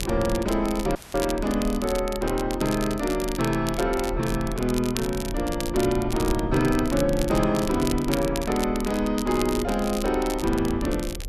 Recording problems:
low-frequency rumble; below 84 Hz, strongest tone 36 Hz, SNR 11 dB
crackling; vinyl, SNR 12 dB
audio cutting out; at 1 s; filled with static

